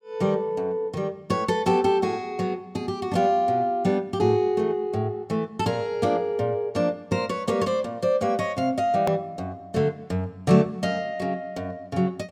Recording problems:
edit click; at 9 s

